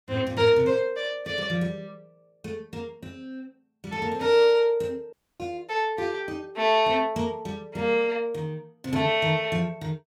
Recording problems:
audio cutting out; at 5 s

